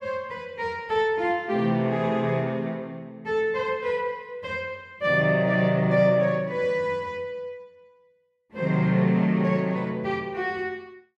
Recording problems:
none

